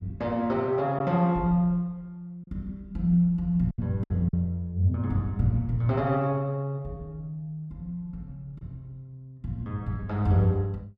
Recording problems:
packet loss; 2% of the sound replaced, filled with silence

